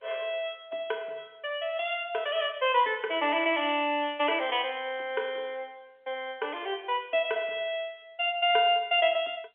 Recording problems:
phone line; 320 Hz to 3.4 kHz, G.711

